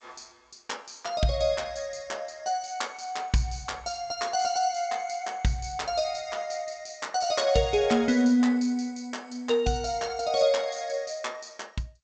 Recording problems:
lossy compression; G.722, log-spectral distance 5 dB

